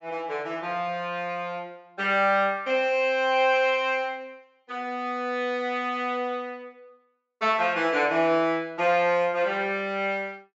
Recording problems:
low-pass filter; nothing above 8 kHz

